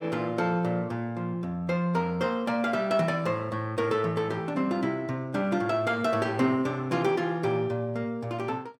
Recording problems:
none

